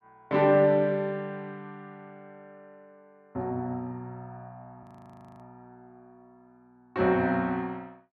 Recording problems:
frozen audio; at 5 s for 0.5 s

